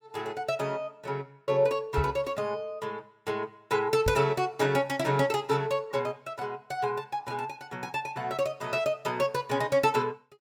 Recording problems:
knock on the microphone; at 2 s and at 4 s; peak +3 dB vs average level

